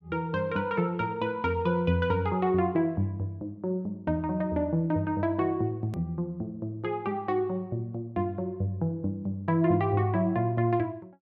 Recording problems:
click at an edit; at 6 s

